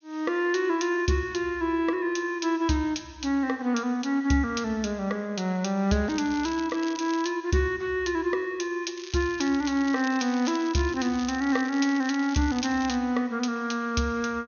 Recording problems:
treble cut off; nothing above 6.6 kHz
crackling; from 6 to 7.5 s and from 9 to 13 s; loose cable, SNR 16 dB

